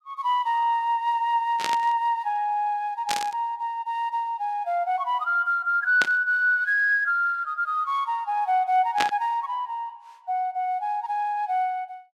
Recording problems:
burst of static; 4 times, first at 1.5 s; peak +3 dB vs average level

